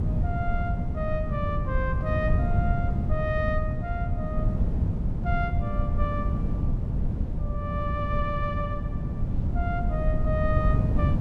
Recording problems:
wind noise; below 140 Hz, SNR -5 dB

